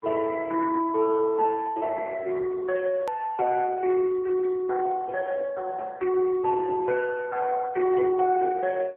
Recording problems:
phone line; 300 Hz to 3.2 kHz, AMR-NB
click at an edit; at 3 s

